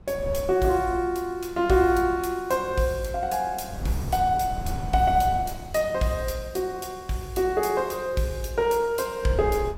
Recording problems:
wind noise; below 160 Hz, SNR 11 dB

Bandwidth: 16 kHz